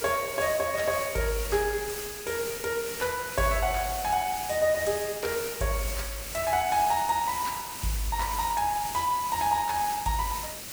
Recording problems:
hiss; slope -1 dB per octave, SNR 7 dB

